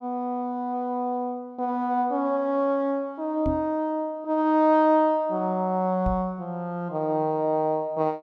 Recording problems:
microphone bump; at 3.5 s and at 6 s; peak 0 dB vs average level

